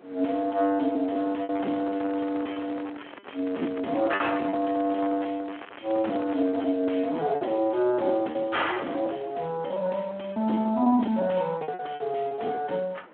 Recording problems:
phone line; 220 Hz to 3.4 kHz, Speex
distortion; soft clipping, signal-to-distortion ratio 14 dB
wind noise; below 1.2 kHz, SNR 23 dB
packet loss; 14% of the sound replaced, filled with repeated pitch periods
crackle; from 1.5 to 6.5 s; loose cable, SNR 17 dB

